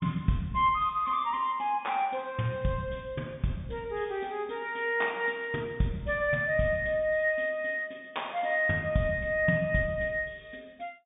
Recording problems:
treble missing; nothing above 3.7 kHz

